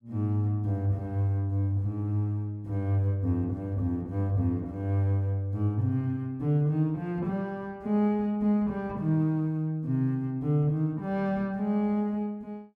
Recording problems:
none

